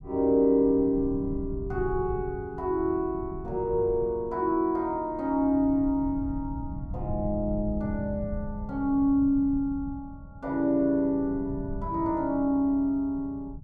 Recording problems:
rumble; below 140 Hz, SNR 13 dB

